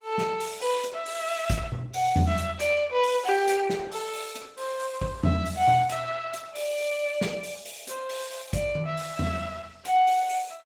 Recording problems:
codec artefacts; Opus, log-spectral distance 5 dB, nothing above 20.1 kHz

